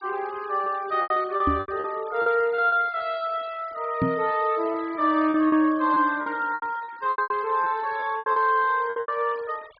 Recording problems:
treble missing; nothing above 5 kHz
denoising artefacts; signal-to-artefact ratio 24 dB
packet loss; 12% of the sound replaced, filled with repeated pitch periods
knock on the microphone; at 1.5 s and at 4 s; peak +3 dB vs average level

